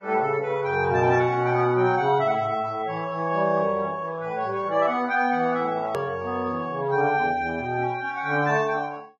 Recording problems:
lossy codec; Vorbis, log-spectral distance 2 dB, nothing above 13.1 kHz
edit click; at 6 s

